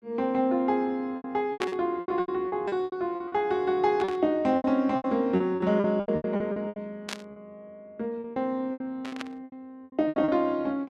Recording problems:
lost packets; 16% of the sound replaced, filled with repeated pitch periods
burst of static; 4 times, first at 1.5 s; peak 0 dB vs average level

